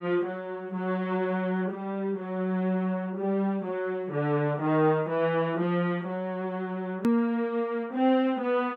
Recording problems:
hard cut with a click; at 7 s

